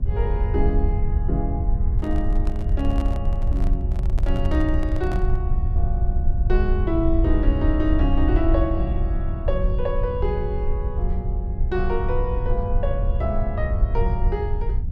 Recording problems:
hum; 60 Hz, harmonics up to 720 Hz, SNR 22 dB
rumble; below 70 Hz, SNR -3 dB
handling noise; from 2 to 5.5 s; peak -4 dB vs average level

